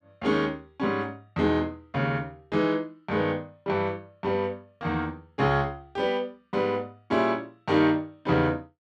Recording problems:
none

